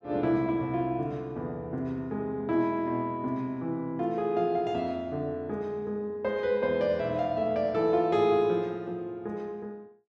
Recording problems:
none

